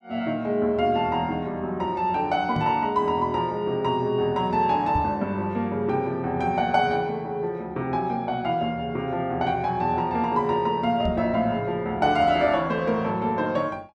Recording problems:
microphone bump; at 2.5 s, at 5 s and at 11 s; peak -1 dB vs average level

